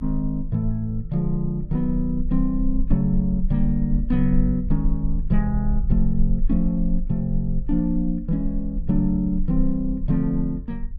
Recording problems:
low-frequency rumble; below 42 Hz, strongest tone 22 Hz, SNR 6 dB

